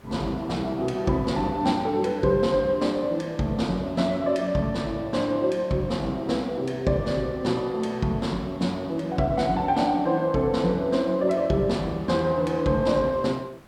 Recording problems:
hiss; slope -6 dB per octave, SNR 28 dB

